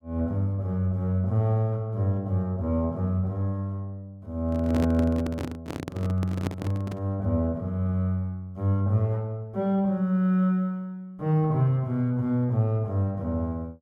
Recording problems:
handling noise; from 4.5 to 7 s; peak 0 dB vs average level

